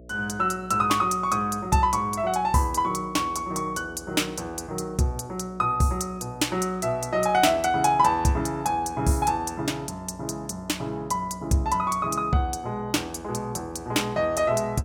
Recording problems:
hum; 60 Hz, harmonics up to 660 Hz, SNR 22 dB

